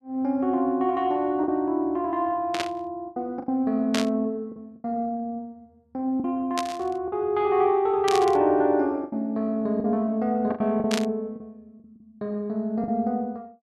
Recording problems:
lost packets; 6% of the sound replaced, filled with the last packet
burst of static; 5 times, first at 2.5 s; peak +1 dB vs average level

